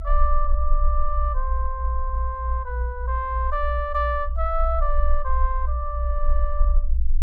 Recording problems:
rumble; below 60 Hz, strongest tone 18 Hz, SNR -2 dB

